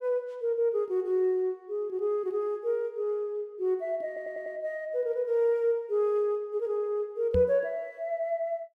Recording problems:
stutter; at 4 s
microphone thump; at 7.5 s; peak +1 dB vs average level

